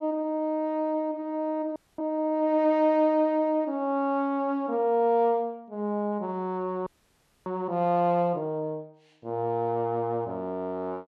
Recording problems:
audio freezing; at 2 s and at 7 s for 0.5 s

